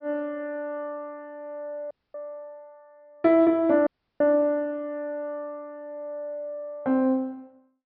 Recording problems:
treble cut off; nothing above 5.5 kHz
audio cutting out; at 2 s and at 4 s

